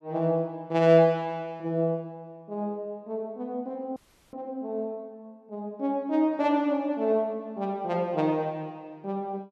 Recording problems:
audio cutting out; at 4 s

